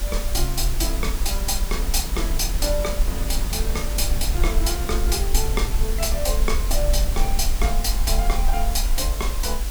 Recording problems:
background hiss; slope -2 dB per octave, SNR 7 dB
low-frequency rumble; below 48 Hz, SNR 0 dB
wind noise; below 240 Hz, SNR 9 dB

